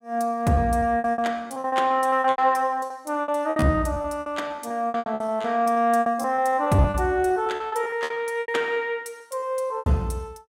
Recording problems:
packet loss; 19% of the sound replaced, filled with repeated pitch periods

